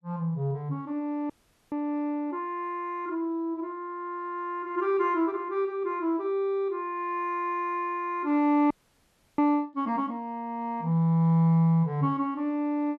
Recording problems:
audio freezing; at 1.5 s and at 8.5 s for 0.5 s

